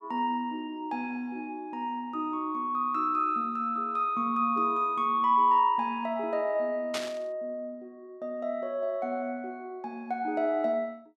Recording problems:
burst of static; at 7 s; peak -1 dB vs average level

